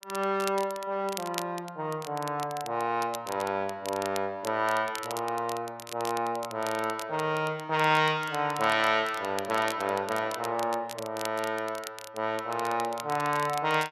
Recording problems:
crackle; vinyl, SNR 14 dB

